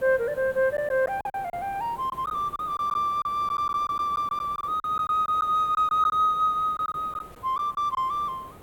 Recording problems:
hiss; SNR 21 dB
packet loss; 9% of the sound replaced, filled with silence

